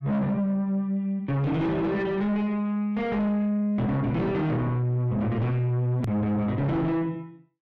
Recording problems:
distorted audio; soft clipping, signal-to-distortion ratio 7 dB
edit click; at 6 s

